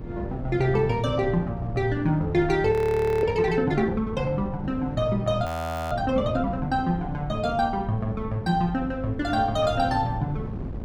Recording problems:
mains hum; 50 Hz, harmonics up to 550 Hz, SNR 19 dB
wind noise; below 220 Hz, SNR 11 dB
audio freezing; at 2.5 s for 0.5 s and at 5.5 s

